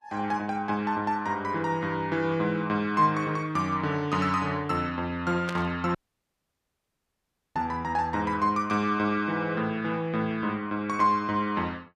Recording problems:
lossy compression; Vorbis, log-spectral distance 2 dB, nothing above 14.6 kHz
static burst; at 5.5 s; peak -3 dB vs average level
audio cutting out; at 6 s for 1.5 s

